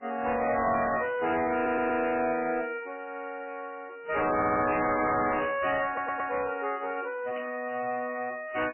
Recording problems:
codec artefacts; MP3, log-spectral distance 5 dB, nothing above 2.5 kHz
distorted audio; hard clipping, uneven, signal-to-distortion ratio 6 dB
audio stuttering; at 1.5 s, at 4.5 s and at 6 s
static burst; at 7.5 s; peak -11 dB vs average level

